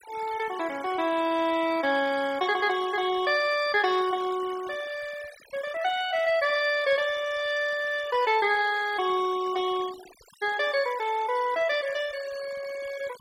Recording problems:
denoising artefacts; signal-to-artefact ratio 18 dB

